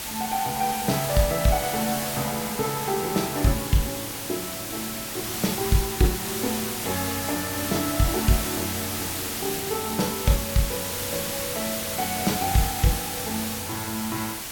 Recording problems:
background hiss; slope 0 dB per octave, SNR 2 dB

